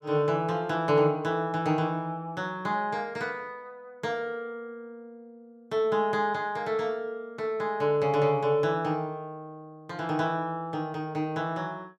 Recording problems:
none

